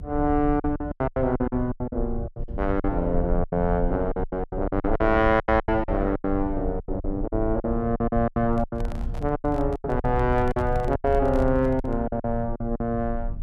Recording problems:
low-frequency rumble; below 76 Hz, strongest tone 26 Hz, SNR 8 dB
packet loss; 17% of the sound replaced, filled with silence
microphone handling noise; from 8.5 to 12 s; peak -11 dB vs average level

